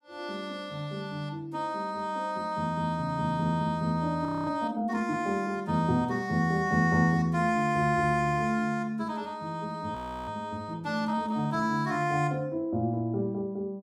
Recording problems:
audio freezing; at 4.5 s and at 10 s

